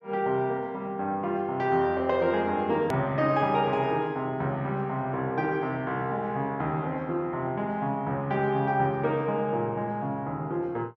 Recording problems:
edit click; at 3 s

